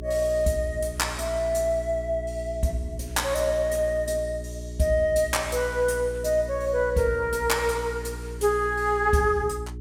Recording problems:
hum; 60 Hz, harmonics up to 420 Hz, SNR 11 dB

